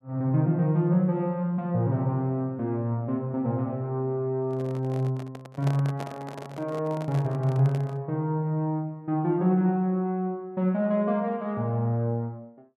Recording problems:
handling noise; from 4.5 to 8 s; peak -4 dB vs average level

